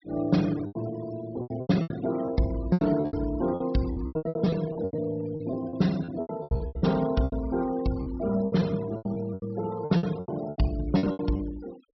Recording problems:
treble missing; nothing above 5.7 kHz
denoising artefacts; signal-to-artefact ratio 19 dB
packet loss; 19% of the sound replaced, filled with repeated pitch periods

